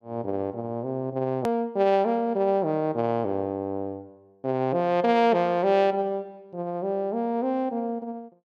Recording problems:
edit click; at 1.5 s

